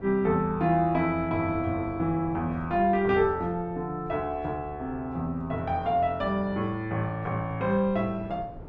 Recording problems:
wind on the microphone; below 380 Hz, SNR 19 dB

